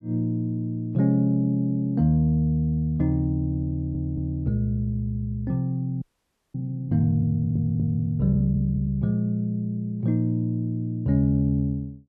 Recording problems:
stutter; at 3.5 s and at 7.5 s
frozen audio; at 6 s for 0.5 s

